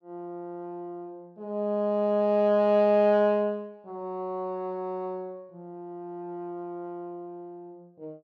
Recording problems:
none

